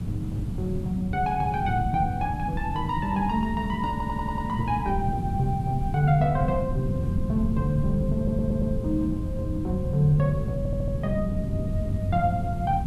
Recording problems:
hiss; slope -5 dB per octave, SNR 25 dB
low-frequency rumble; below 180 Hz, SNR 4 dB
stutter; at 4 s, at 8 s and at 11 s

